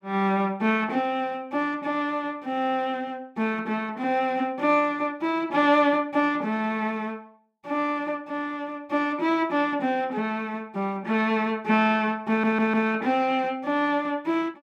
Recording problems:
audio stuttering; at 12 s

